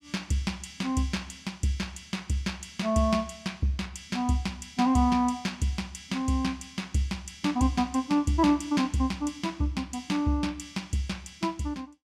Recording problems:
none

